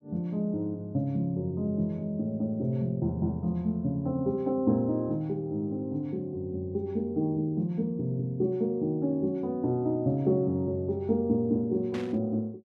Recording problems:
burst of static; at 12 s; peak -9 dB vs average level

